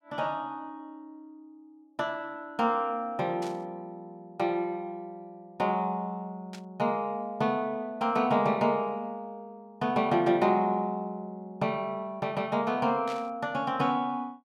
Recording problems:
static burst; at 3.5 s, at 6.5 s and at 13 s; peak -9 dB vs average level

